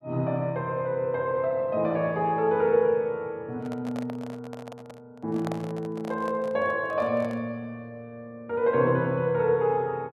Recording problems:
microphone handling noise; from 3.5 to 7.5 s; peak -5 dB vs average level

